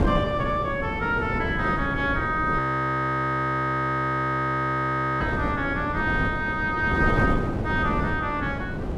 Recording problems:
wind on the microphone; below 460 Hz, SNR 3 dB
frozen audio; at 2.5 s for 2.5 s

